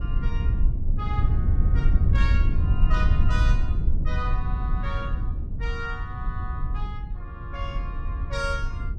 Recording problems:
low-frequency rumble; below 78 Hz, SNR -9 dB

